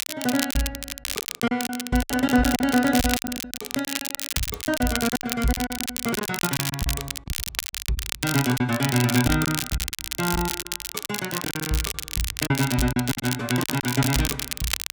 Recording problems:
crackle; vinyl, SNR 3 dB
lost packets; 14% of the sound replaced, filled with silence

